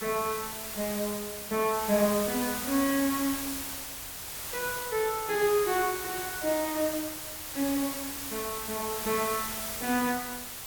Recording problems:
background hiss; slope 0 dB per octave, SNR 4 dB

